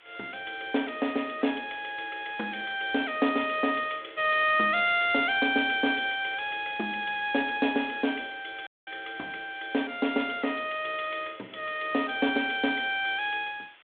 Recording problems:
telephone audio; 240 Hz to 3.7 kHz, G.726
hiss; SNR 27 dB
audio cutting out; at 8.5 s

